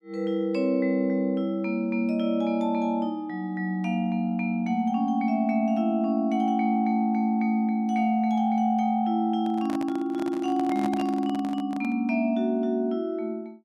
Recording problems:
handling noise; from 9.5 to 12 s; peak -5 dB vs average level

